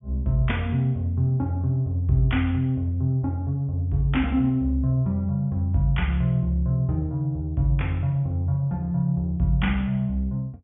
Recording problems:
treble cut off; nothing above 3.6 kHz

